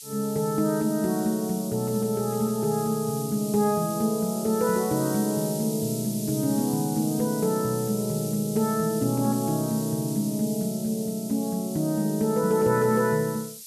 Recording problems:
hiss; SNR 11 dB

